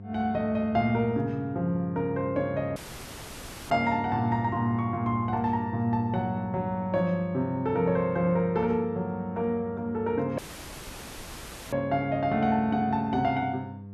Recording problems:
hum; 50 Hz, harmonics up to 900 Hz, SNR 13 dB
dropout; at 3 s for 1 s and at 10 s for 1.5 s

